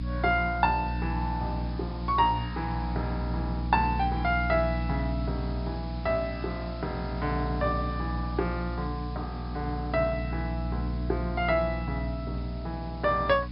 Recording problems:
treble cut off; nothing above 5.5 kHz
hum; 60 Hz, harmonics up to 300 Hz, SNR 3 dB
hiss; slope -1 dB per octave, SNR 20 dB

